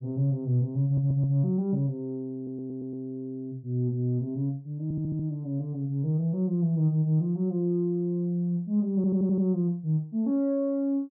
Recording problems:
audio stuttering; 4 times, first at 1 s

